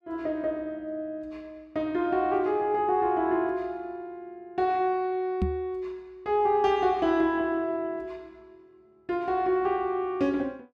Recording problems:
microphone bump; at 5.5 s; peak +3 dB vs average level

